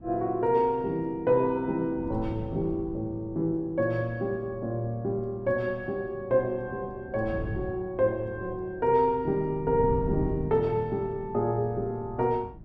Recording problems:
wind on the microphone; below 190 Hz, SNR 14 dB

